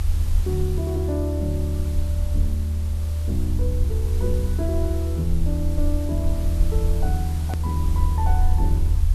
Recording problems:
background hiss; slope -2 dB per octave, SNR 13 dB
low-frequency rumble; below 80 Hz, SNR -6 dB
edit click; at 7.5 s

